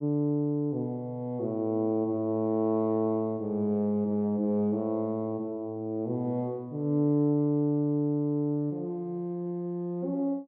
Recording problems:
none

